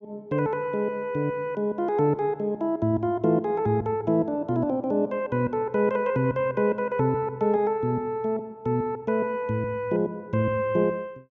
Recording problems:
none

